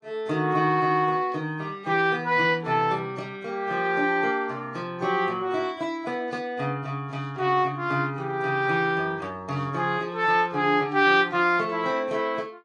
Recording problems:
lossy compression; AAC, log-spectral distance 2 dB

